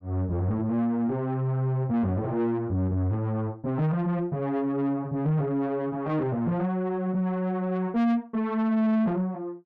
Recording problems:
distortion; soft clipping, signal-to-distortion ratio 7 dB

